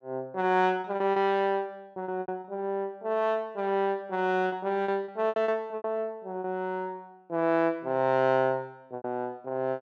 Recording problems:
packet loss; 8% of the sound replaced, filled with repeated pitch periods

